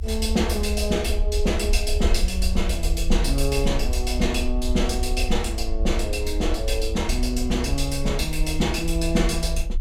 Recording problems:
low-frequency rumble; below 62 Hz, SNR 2 dB

